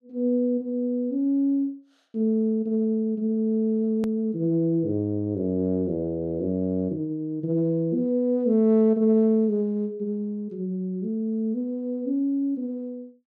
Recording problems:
click at an edit; at 4 s

